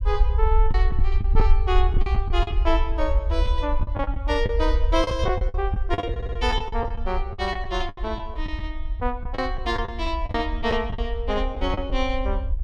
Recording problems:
rumble; below 60 Hz, SNR 0 dB
packet loss; 11% of the sound replaced, filled with the last packet
audio stuttering; at 6 s

